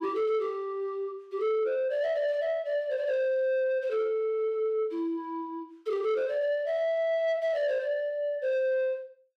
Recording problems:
distortion; soft clipping, signal-to-distortion ratio 11 dB

